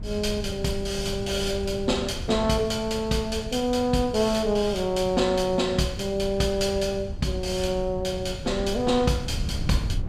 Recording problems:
wind on the microphone; below 130 Hz, SNR 11 dB

